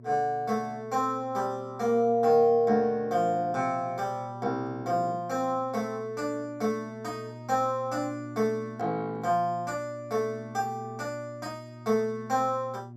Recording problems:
hum; 60 Hz, harmonics up to 720 Hz, SNR 16 dB

